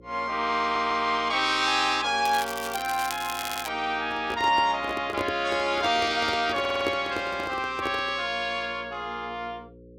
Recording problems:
hum; 60 Hz, harmonics up to 540 Hz, SNR 24 dB
stutter; at 0.5 s, at 3.5 s and at 6.5 s
crackle; from 2.5 to 3.5 s; loose cable, SNR 10 dB
microphone handling noise; from 4 to 8.5 s; peak 0 dB vs average level

